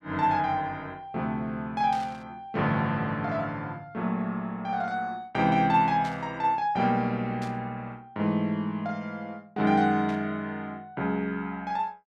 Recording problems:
burst of static; 4 times, first at 2 s; peak -11 dB vs average level

